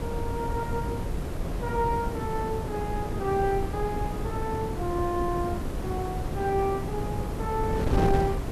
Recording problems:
background hiss; SNR 21 dB
wind on the microphone; below 330 Hz, SNR 1 dB

